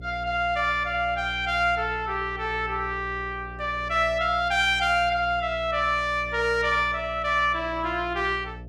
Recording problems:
mains hum; 60 Hz, harmonics up to 720 Hz, SNR 16 dB

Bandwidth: 14.5 kHz